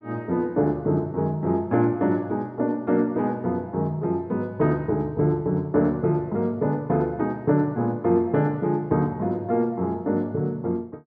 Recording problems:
none

